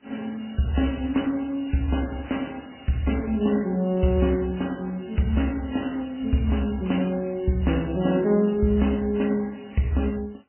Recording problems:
codec artefacts; MP3, then AAC, log-spectral distance 6 dB, nothing above 3 kHz

